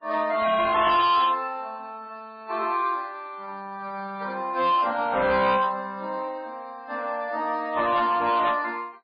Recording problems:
codec artefacts; MP3, then MP3, log-spectral distance 2 dB, nothing above 4.5 kHz
distortion; hard clipping, signal-to-distortion ratio 11 dB

